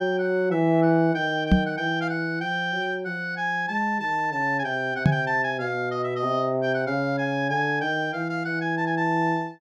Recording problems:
knock on the microphone; at 1.5 s and at 5 s; peak +9 dB vs average level

